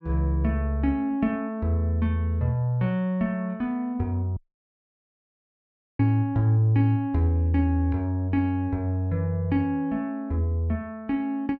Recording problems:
audio cutting out; at 4.5 s for 1.5 s

